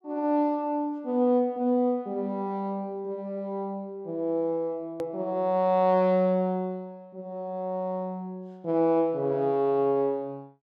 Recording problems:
click at an edit; at 5 s

